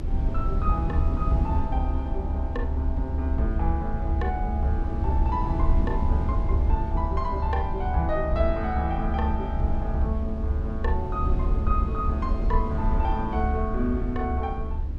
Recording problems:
rumble; below 74 Hz, SNR -3 dB

